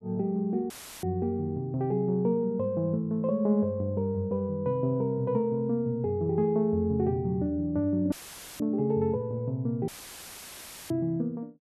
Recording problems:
audio cutting out; at 0.5 s, at 8 s and at 10 s for 1 s; filled with static

